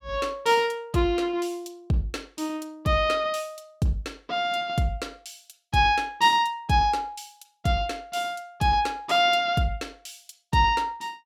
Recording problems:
none

